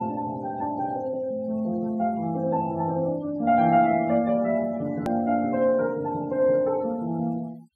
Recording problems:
denoising artefacts; signal-to-artefact ratio 26 dB
click at an edit; at 5 s

